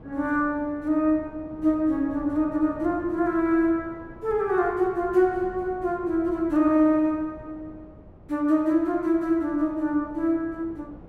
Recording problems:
wind noise; below 420 Hz, SNR 21 dB

